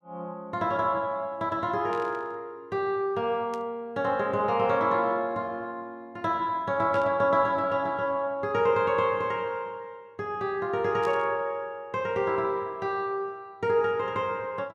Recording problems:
static burst; 4 times, first at 2 s; peak -13 dB vs average level

